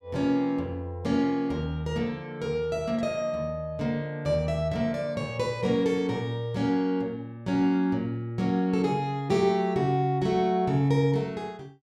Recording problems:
none

